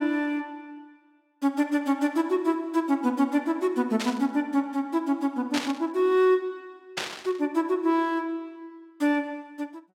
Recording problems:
burst of static; at 4 s, at 5.5 s and at 7 s; peak +1 dB vs average level

